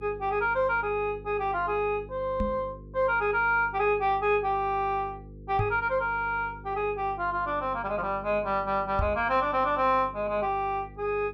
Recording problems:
electrical hum; 50 Hz, harmonics up to 500 Hz, SNR 19 dB
microphone bump; at 2.5 s, at 5.5 s and at 9 s; peak +1 dB vs average level

